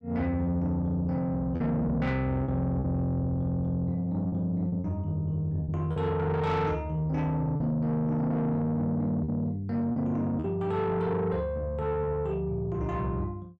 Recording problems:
distorted audio; soft clipping, signal-to-distortion ratio 11 dB
packet loss; 4% of the sound replaced, filled with repeated pitch periods

